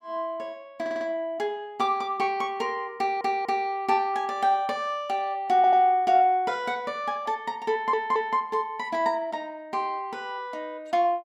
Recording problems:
audio stuttering; 4 times, first at 1 s

